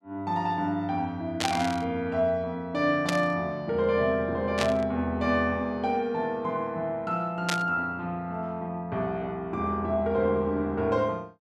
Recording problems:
static burst; 4 times, first at 1.5 s; peak +3 dB vs average level

